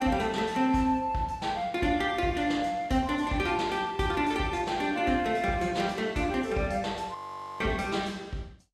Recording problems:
lossy codec; Vorbis, log-spectral distance 2 dB, nothing above 13.1 kHz
audio freezing; at 7 s

